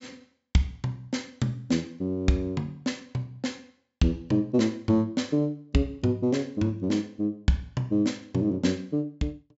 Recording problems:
treble cut off; nothing above 8 kHz

